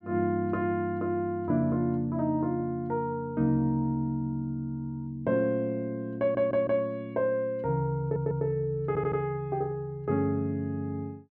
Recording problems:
audio stuttering; at 6 s, at 8 s and at 9 s

